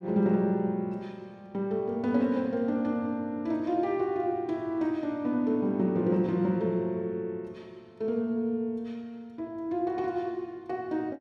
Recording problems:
none

